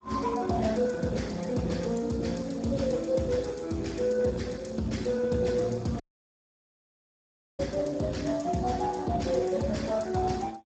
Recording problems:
codec artefacts; Speex, log-spectral distance 5 dB, nothing above 7.8 kHz
audio cutting out; at 6 s for 1.5 s

